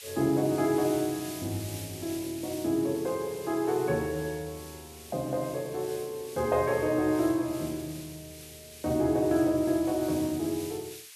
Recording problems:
background hiss; SNR 15 dB

